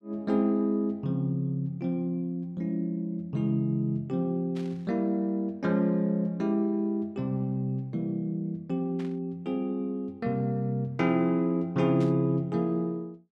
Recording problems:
burst of static; at 4.5 s, at 9 s and at 12 s; peak -14 dB vs average level

